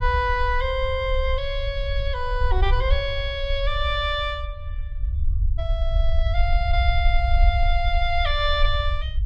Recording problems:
rumble; below 64 Hz, SNR 1 dB

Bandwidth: 14.5 kHz